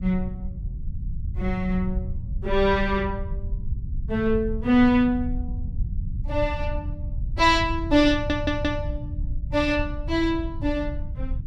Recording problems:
rumble; below 88 Hz, SNR 8 dB
stutter; at 8 s

